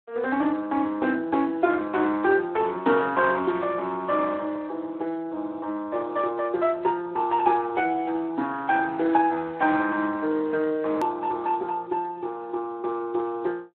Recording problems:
telephone audio; 220 Hz to 3.6 kHz, Speex
edit click; at 11 s

